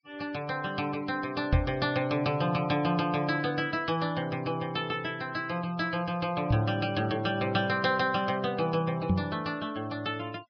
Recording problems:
treble cut off; nothing above 5.5 kHz
denoising artefacts; signal-to-artefact ratio 23 dB
microphone bump; at 1.5 s, at 6.5 s and at 9 s; peak +7 dB vs average level

